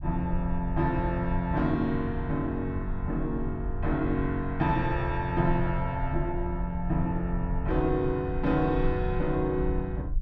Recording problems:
rumble; below 72 Hz, SNR 7 dB

